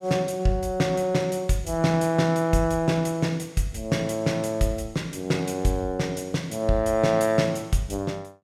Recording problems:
none

